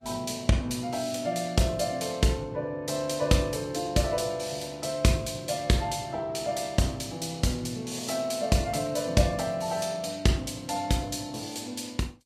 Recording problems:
codec artefacts; Vorbis, log-spectral distance 4 dB, nothing above 14.3 kHz

